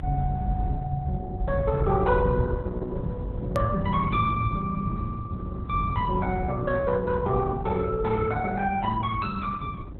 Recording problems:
codec artefacts; Opus, log-spectral distance 2 dB, nothing above 13.1 kHz
electrical hum; 50 Hz, harmonics up to 750 Hz, SNR 19 dB
rumble; below 100 Hz, SNR 1 dB
hard cut with a click; at 3.5 s

